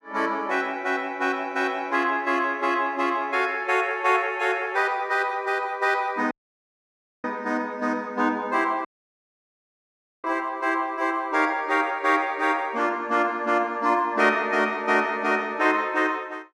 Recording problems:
dropout; at 6.5 s for 1 s and at 9 s for 1.5 s

